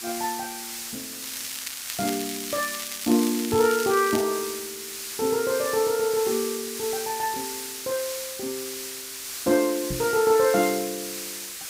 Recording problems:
background hiss; slope +3 dB per octave, SNR 7 dB
crackle; from 1 to 4 s; loose cable, SNR 10 dB
knock on the microphone; at 3.5 s and at 10 s; peak -3 dB vs average level

